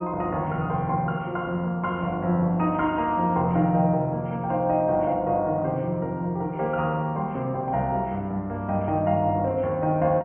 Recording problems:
treble cut off; nothing above 3.1 kHz

